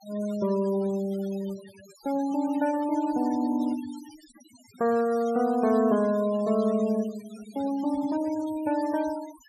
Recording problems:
denoising artefacts; signal-to-artefact ratio 20 dB

